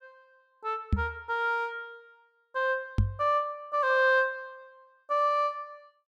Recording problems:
knock on the microphone; at 1 s and at 3 s; peak +6 dB vs average level

